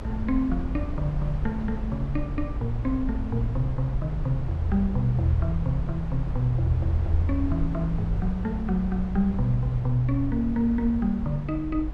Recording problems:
low-frequency rumble; below 88 Hz, SNR 5 dB

